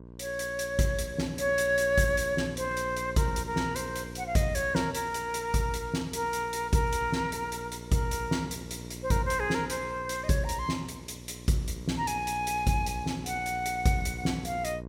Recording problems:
hum; 60 Hz, harmonics up to 1.1 kHz, SNR 14 dB

